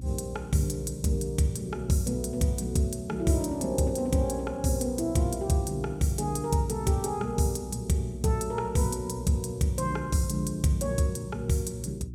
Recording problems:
mains hum; 60 Hz, harmonics up to 360 Hz, SNR 14 dB

